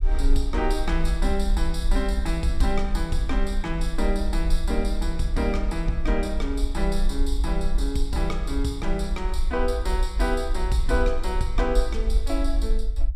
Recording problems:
low-frequency rumble; below 46 Hz, strongest tone 20 Hz, SNR 0 dB

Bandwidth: 14.5 kHz